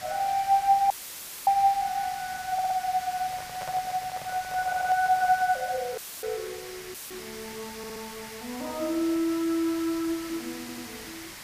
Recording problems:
background hiss; SNR 13 dB
dropout; at 1 s for 0.5 s, at 6 s and at 7 s; filled with static
audio stuttering; 4 times, first at 2.5 s
handling noise; from 3 to 5.5 s; peak -8 dB vs average level

